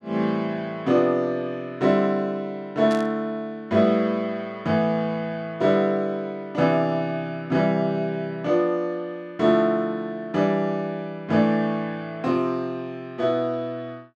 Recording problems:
static burst; at 3 s; peak -11 dB vs average level

